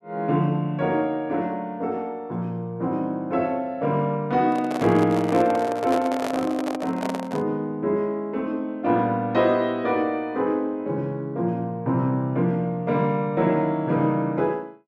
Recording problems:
handling noise; from 4.5 to 7.5 s; peak -1 dB vs average level

